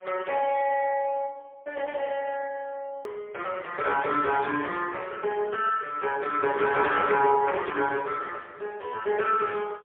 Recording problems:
phone line; 320 Hz to 2.8 kHz, AMR-NB, then MP3
hard cut with a click; at 3 s

